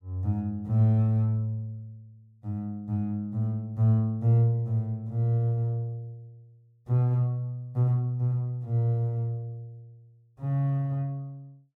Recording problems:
none

